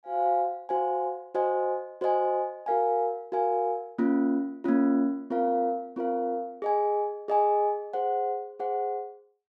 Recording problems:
none

